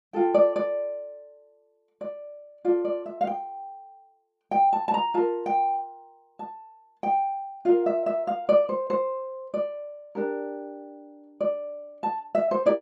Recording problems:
none

